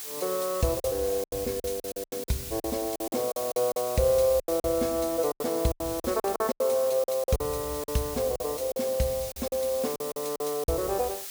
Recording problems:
background hiss; slope +2 dB per octave, SNR 8 dB
packet loss; 14% of the sound replaced, filled with silence

